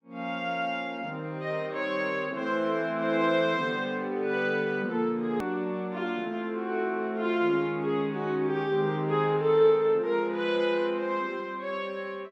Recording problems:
edit click; at 5.5 s

